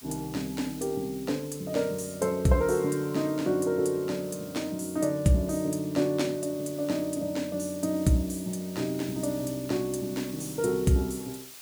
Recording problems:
background hiss; slope +2 dB per octave, SNR 17 dB

